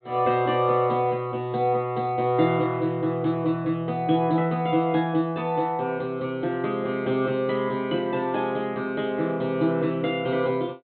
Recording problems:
treble missing; nothing above 4 kHz

